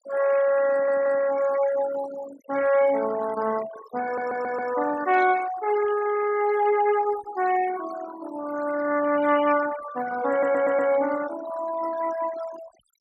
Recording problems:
noise reduction artefacts; signal-to-artefact ratio 13 dB
audio stuttering; at 0.5 s, at 4 s and at 10 s

